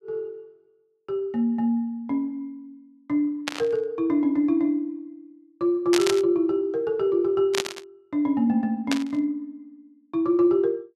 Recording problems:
burst of static; 4 times, first at 3.5 s; peak +3 dB vs average level

